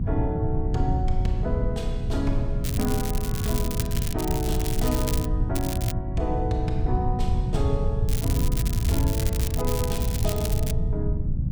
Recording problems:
electrical hum; 60 Hz, harmonics up to 600 Hz, SNR 8 dB
low-frequency rumble; below 110 Hz, SNR -3 dB
crackle; 4 times, first at 2.5 s; loose cable, SNR 4 dB

